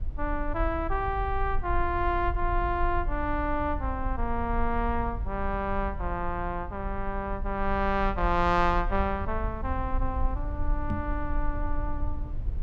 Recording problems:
low-frequency rumble; below 56 Hz, SNR 5 dB
knock on the microphone; at 11 s; peak +1 dB vs average level

